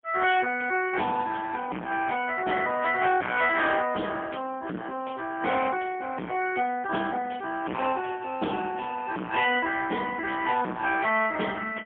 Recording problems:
phone line; 150 Hz to 3.4 kHz, AMR-NB, then MP3
distortion; hard clipping, uneven, signal-to-distortion ratio 3 dB

